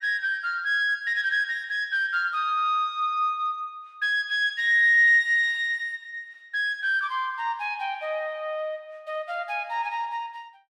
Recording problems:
none

